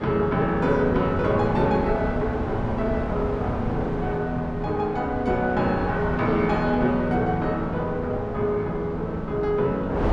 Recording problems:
wind on the microphone; below 600 Hz, SNR 7 dB

